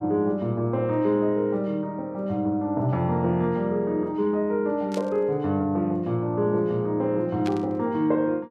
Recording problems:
burst of static; at 5 s and at 7.5 s; peak -8 dB vs average level

